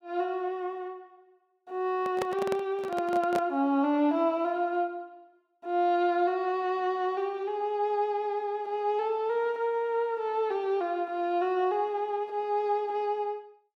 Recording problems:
microphone handling noise; from 2 to 3.5 s; peak +1 dB vs average level

